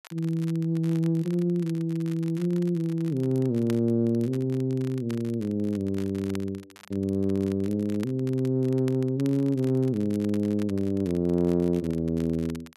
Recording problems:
crackle; vinyl, SNR 23 dB

